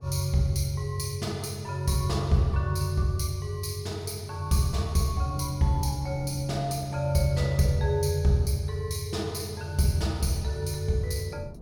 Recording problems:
wind on the microphone; below 280 Hz, SNR 23 dB

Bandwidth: 17 kHz